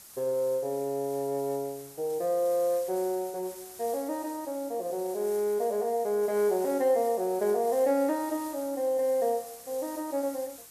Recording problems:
background hiss; SNR 16 dB

